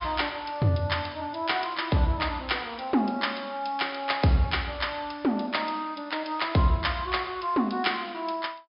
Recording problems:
treble missing; nothing above 5.5 kHz

